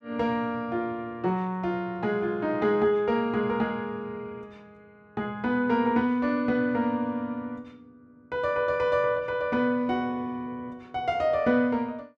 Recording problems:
none

